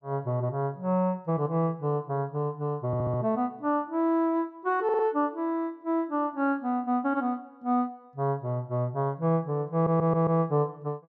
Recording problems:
audio stuttering; at 3 s, at 5 s and at 9.5 s

